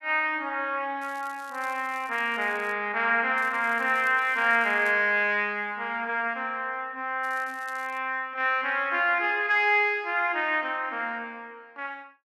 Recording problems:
crackle; from 1 to 2.5 s, from 3.5 to 5 s and at 7 s; loose cable, SNR 27 dB

